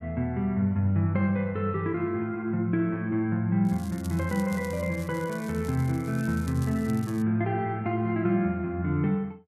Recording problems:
crackle; from 3.5 to 7 s; loose cable, SNR 21 dB

